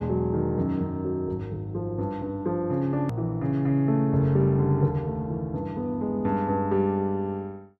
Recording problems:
click at an edit; at 3 s

